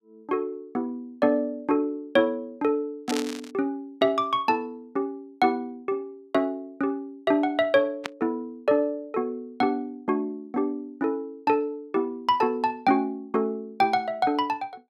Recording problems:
static burst; at 3 s and at 8 s; peak -1 dB vs average level

